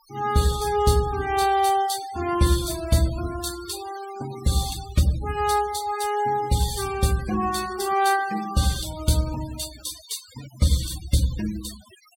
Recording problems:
denoising artefacts; signal-to-artefact ratio 14 dB

